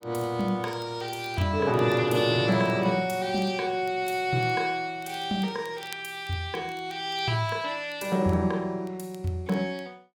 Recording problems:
crackle; vinyl, SNR 26 dB

